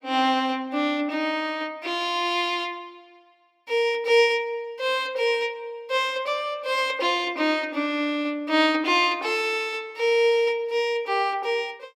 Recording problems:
none

